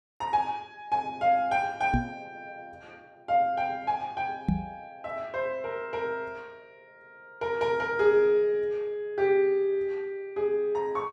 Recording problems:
microphone thump; at 2 s and at 4.5 s; peak +5 dB vs average level

